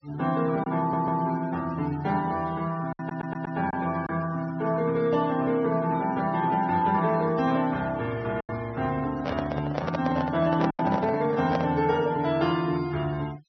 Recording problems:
low-pass filter; nothing above 6 kHz
noise reduction artefacts; signal-to-artefact ratio 20 dB
packet loss; 2% of the sound replaced, filled with silence
stutter; at 1 s and at 3 s
handling noise; from 9 to 12 s; peak +1 dB vs average level

